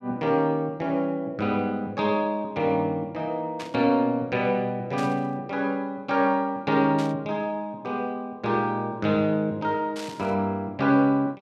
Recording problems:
burst of static; 4 times, first at 3.5 s; peak -9 dB vs average level

